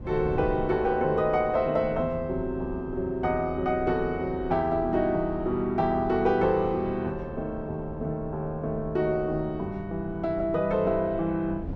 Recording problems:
wind noise; below 180 Hz, SNR 15 dB

